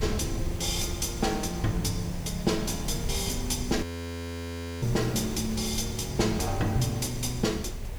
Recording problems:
background hiss; SNR 14 dB
rumble; below 140 Hz, SNR 13 dB
wind noise; below 98 Hz, SNR 10 dB
audio freezing; at 4 s for 1 s

